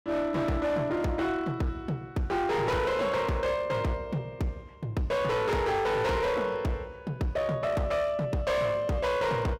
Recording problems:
distortion; hard clipping, signal-to-distortion ratio 8 dB

